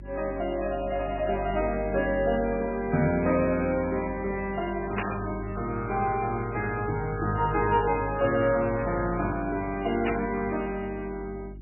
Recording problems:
lossy compression; MP3, log-spectral distance 4 dB, nothing above 2.4 kHz
electrical hum; 50 Hz, harmonics up to 350 Hz, SNR 13 dB
static burst; at 5 s and at 10 s; peak 0 dB vs average level

